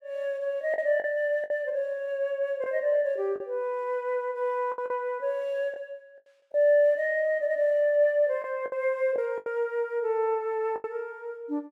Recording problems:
lost packets; 5% of the sound replaced, filled with the last packet

